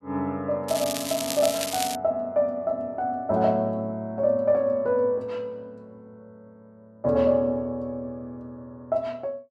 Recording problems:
crackle; from 0.5 to 2 s; loose cable, SNR 5 dB

